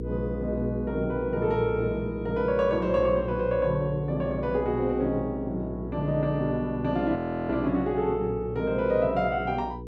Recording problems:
hum; 60 Hz, harmonics up to 480 Hz, SNR 10 dB
frozen audio; at 7 s

